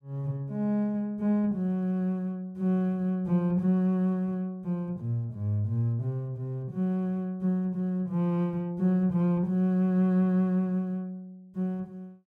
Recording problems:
none

